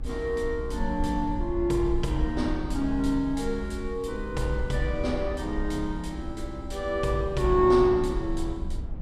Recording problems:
low-frequency rumble; below 68 Hz, SNR 9 dB

